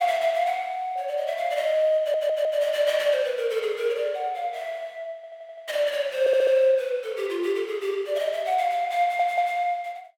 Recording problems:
audio stuttering; 4 times, first at 2 s

